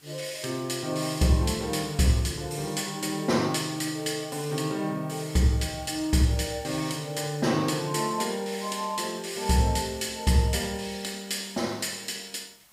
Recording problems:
background hiss; slope 0 dB per octave, SNR 27 dB

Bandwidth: 15.5 kHz